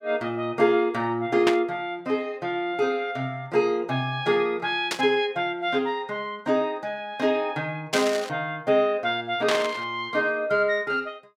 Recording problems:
burst of static; 4 times, first at 1.5 s; peak +4 dB vs average level

